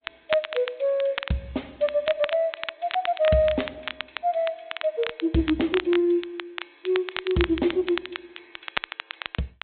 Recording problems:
treble missing; nothing above 4 kHz
lossy codec; Opus, log-spectral distance 3 dB
crackle; vinyl, SNR 9 dB

